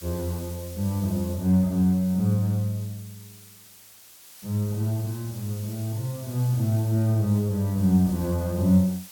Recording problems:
hiss; slope +1 dB per octave, SNR 19 dB

